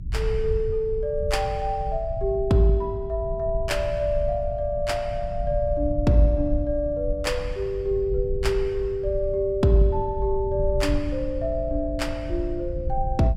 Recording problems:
rumble; below 74 Hz, SNR 7 dB

